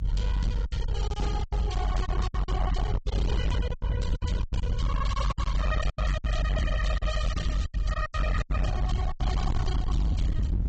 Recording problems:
lossy codec; AAC, log-spectral distance 2 dB, nothing above 7.6 kHz
distorted audio; hard clipping, signal-to-distortion ratio 8 dB
low-frequency rumble; below 86 Hz, strongest tone 50 Hz, SNR -6 dB
lost packets; 13% of the sound replaced, filled with silence

